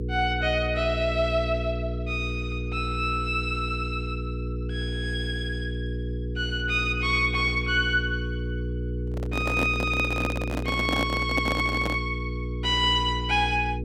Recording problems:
hum; 60 Hz, harmonics up to 480 Hz, SNR 5 dB
microphone handling noise; from 9 to 12 s; peak +2 dB vs average level

